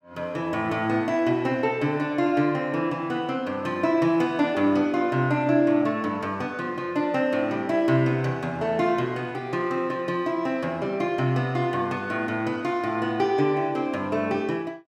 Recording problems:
none

